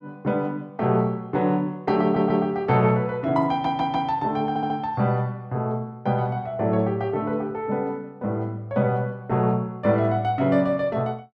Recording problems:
audio stuttering; at 2 s, at 3.5 s and at 4.5 s

